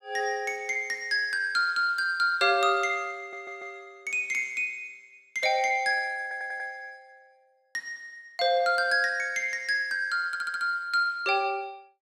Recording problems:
audio stuttering; at 3 s, at 6 s and at 10 s

